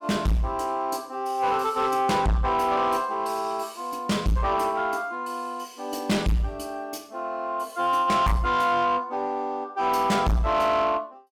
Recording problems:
distortion; soft clipping, signal-to-distortion ratio 6 dB

